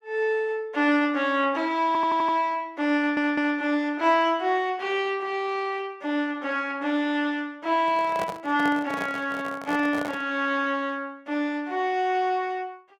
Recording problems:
audio stuttering; at 2 s and at 3 s
handling noise; from 8 to 10 s; peak -3 dB vs average level

